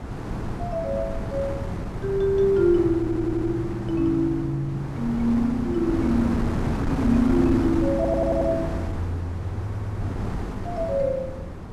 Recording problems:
wind on the microphone; below 380 Hz, SNR 6 dB
audio stuttering; at 3 s, at 8 s and at 9.5 s

